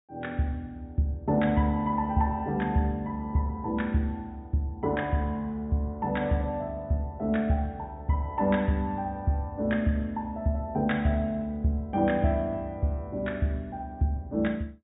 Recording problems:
treble missing; nothing above 4 kHz

